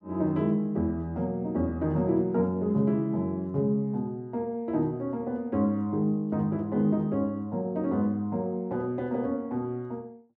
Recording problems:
none

